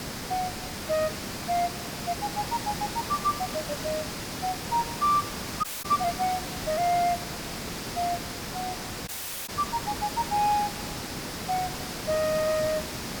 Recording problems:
background hiss; slope -3 dB per octave, SNR 4 dB
audio cutting out; at 5.5 s and at 9 s

